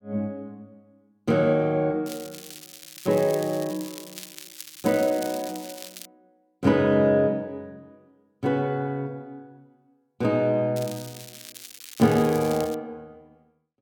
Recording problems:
crackling; from 2 to 6 s and from 11 to 13 s; loose cable, SNR 16 dB

